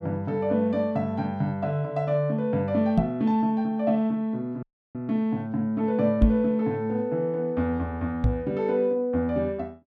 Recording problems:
microphone bump; at 3 s, at 6 s and at 8 s; peak +8 dB vs average level
audio cutting out; at 4.5 s

